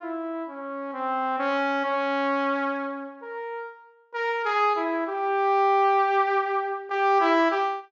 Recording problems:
treble missing; nothing above 7.3 kHz

